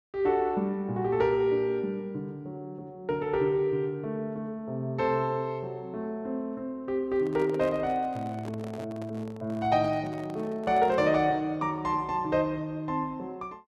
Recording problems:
microphone handling noise; from 7 to 11 s; peak -10 dB vs average level

